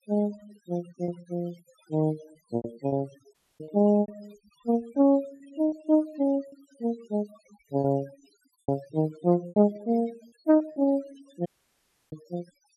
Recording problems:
denoising artefacts; signal-to-artefact ratio 24 dB
lost packets; 10% of the sound replaced, filled with repeated pitch periods
audio cutting out; at 3.5 s and at 11 s for 0.5 s

